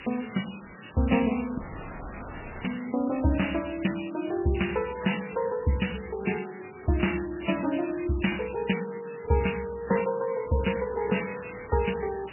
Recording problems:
codec artefacts; MP3, log-spectral distance 20 dB, nothing above 2.9 kHz
background hiss; SNR 16 dB
audio cutting out; at 1.5 s for 1 s

